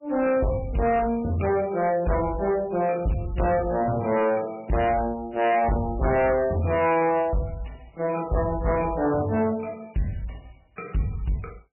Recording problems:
codec artefacts; MP3, log-spectral distance 4 dB, nothing above 2.4 kHz
distortion; soft clipping, signal-to-distortion ratio 6 dB

